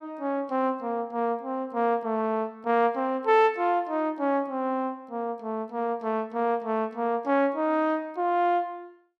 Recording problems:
none

